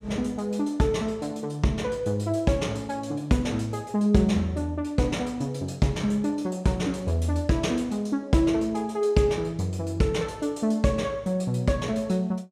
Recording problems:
none

